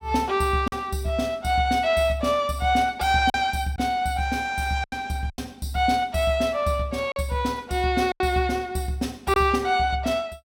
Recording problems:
lost packets; 4% of the sound replaced, filled with silence

